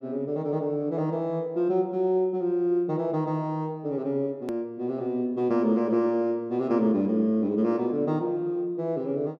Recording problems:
edit click; at 4.5 s

